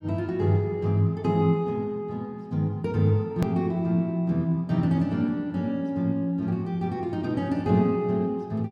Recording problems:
click at an edit; at 3.5 s

